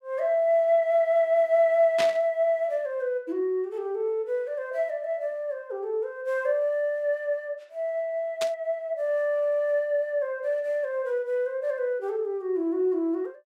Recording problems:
static burst; at 2 s and at 8.5 s; peak 0 dB vs average level

